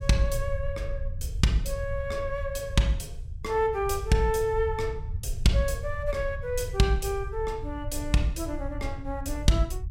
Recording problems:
rumble; below 82 Hz, SNR 8 dB

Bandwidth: 16 kHz